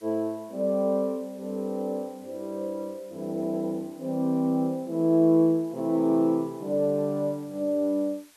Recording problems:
background hiss; slope +1 dB per octave, SNR 29 dB

